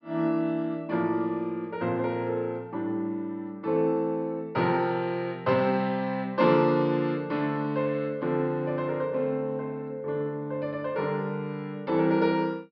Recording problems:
low-pass filter; nothing above 5.5 kHz

